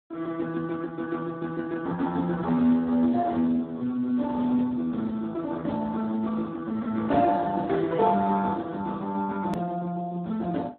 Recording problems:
phone line; 130 Hz to 2.2 kHz, Speex
hard cut with a click; at 9.5 s

